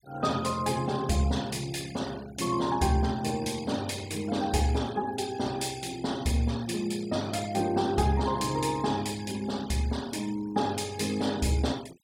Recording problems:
noise reduction artefacts; signal-to-artefact ratio 18 dB

